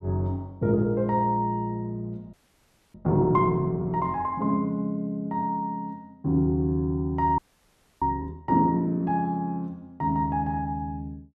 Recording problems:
audio freezing; at 2.5 s for 0.5 s and at 7.5 s for 0.5 s

